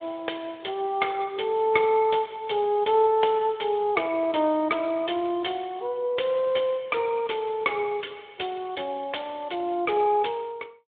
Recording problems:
telephone audio; 280 Hz to 3.6 kHz, Speex

